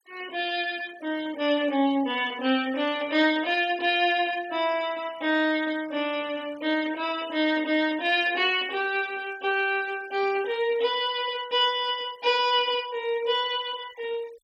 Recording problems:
denoising artefacts; signal-to-artefact ratio 22 dB

